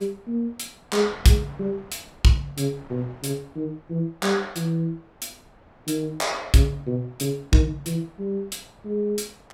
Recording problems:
wind on the microphone; below 1.1 kHz, SNR 25 dB

